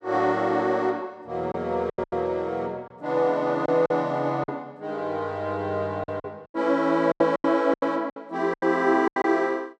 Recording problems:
packet loss; 9% of the sound replaced, filled with silence

